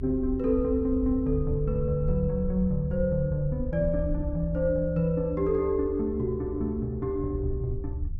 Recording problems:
rumble; below 72 Hz, SNR 7 dB

